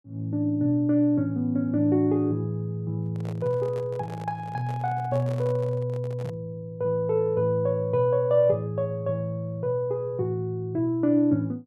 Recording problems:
microphone handling noise; from 3 to 6.5 s; peak -12 dB vs average level

